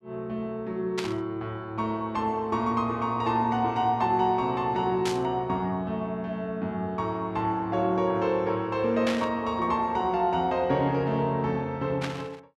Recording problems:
burst of static; 4 times, first at 1 s; peak -1 dB vs average level

